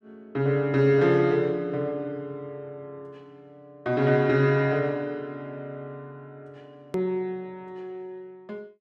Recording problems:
hard cut with a click; at 7 s

